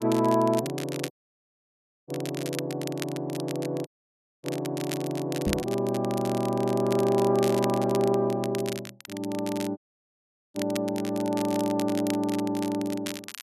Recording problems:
crackle; vinyl, SNR 12 dB
dropout; at 1 s for 1 s, at 4 s for 0.5 s and at 10 s for 1 s
microphone bump; at 5.5 s; peak +2 dB vs average level

